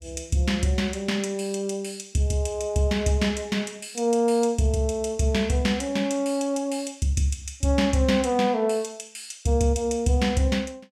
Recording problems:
none

